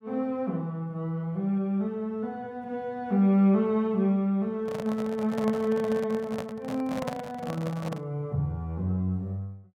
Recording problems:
handling noise; from 4.5 to 8 s; peak 0 dB vs average level

